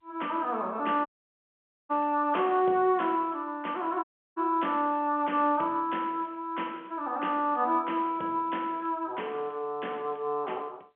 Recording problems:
phone line; 260 Hz to 3.3 kHz, G.711
dropout; at 1 s for 1 s and at 4 s

